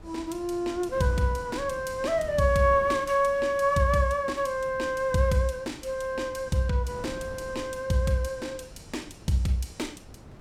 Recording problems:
wind on the microphone; below 380 Hz, SNR 19 dB

